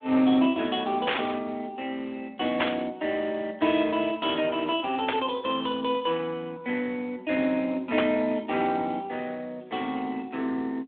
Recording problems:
phone line; 220 Hz to 3.6 kHz, Speex
static burst; 4 times, first at 1 s; peak +4 dB vs average level

